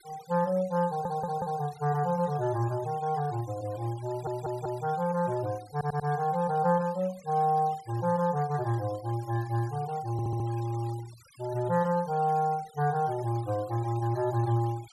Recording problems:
denoising artefacts; signal-to-artefact ratio 22 dB
audio stuttering; 4 times, first at 1 s

